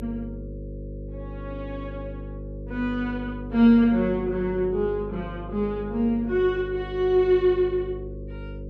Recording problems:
hum; 50 Hz, harmonics up to 550 Hz, SNR 13 dB

